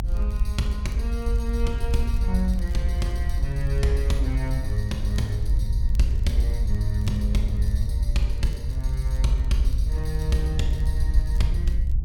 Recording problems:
low-frequency rumble; below 64 Hz, SNR -4 dB
crackling; vinyl, SNR 27 dB

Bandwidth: 17 kHz